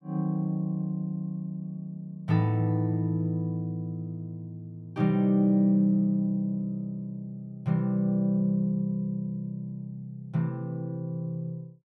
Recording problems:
none

